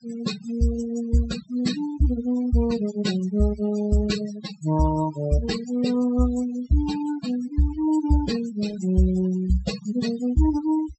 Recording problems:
treble cut off; nothing above 7.8 kHz
noise reduction artefacts; signal-to-artefact ratio 13 dB

